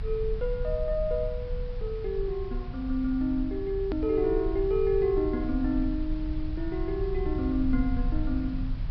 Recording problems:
treble missing; nothing above 5.5 kHz
hiss; SNR 22 dB
rumble; below 66 Hz, strongest tone 34 Hz, SNR 6 dB
hard cut with a click; at 4 s

